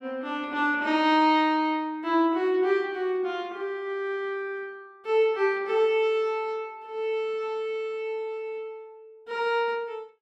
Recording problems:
none

